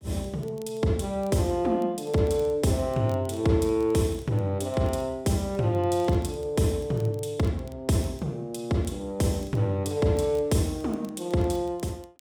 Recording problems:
crackle; vinyl, SNR 29 dB

